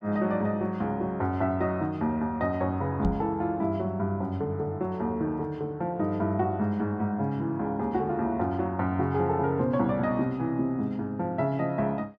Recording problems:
microphone bump; at 3 s; peak +4 dB vs average level

